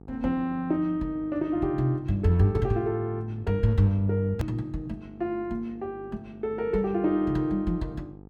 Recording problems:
electrical hum; 50 Hz, harmonics up to 900 Hz, SNR 20 dB
hard cut with a click; at 4.5 s

